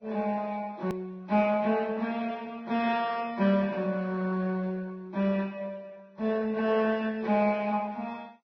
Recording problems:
lossy compression; MP2, then Vorbis, log-spectral distance 3 dB, nothing above 18.9 kHz
edit click; at 1 s

